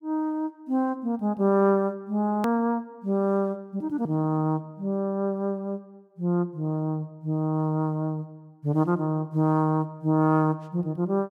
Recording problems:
hard cut with a click; at 2.5 s

